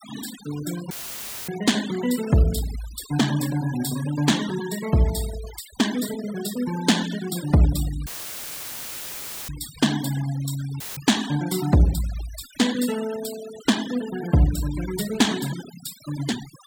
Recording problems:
denoising artefacts; signal-to-artefact ratio 13 dB
audio cutting out; at 1 s for 0.5 s, at 8 s for 1.5 s and at 11 s; filled with static

